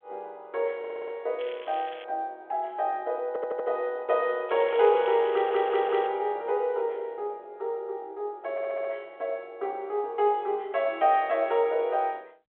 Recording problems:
phone line; 340 Hz to 3.8 kHz, G.726
audio stuttering; 4 times, first at 1 s
crackle; at 1.5 s and from 4.5 to 6 s; loose cable, SNR 19 dB

